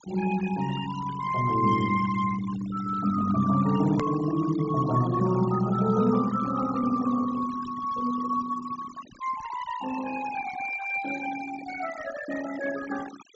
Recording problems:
treble cut off; nothing above 7.6 kHz
denoising artefacts; signal-to-artefact ratio 15 dB
edit click; at 4 s

